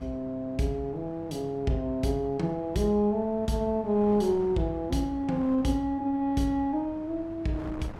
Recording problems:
hum; 50 Hz, harmonics up to 800 Hz, SNR 23 dB
wind noise; below 650 Hz, SNR 19 dB

